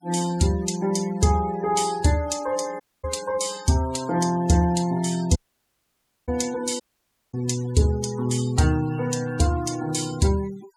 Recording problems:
denoising artefacts; signal-to-artefact ratio 17 dB
audio cutting out; at 3 s, at 5.5 s for 1 s and at 7 s for 0.5 s

